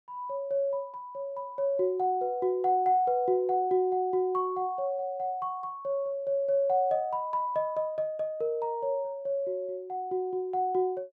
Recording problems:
none

